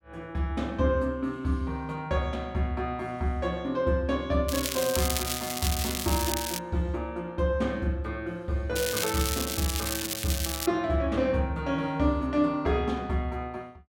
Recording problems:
crackle; from 4.5 to 6.5 s and from 9 to 11 s; loose cable, SNR 2 dB

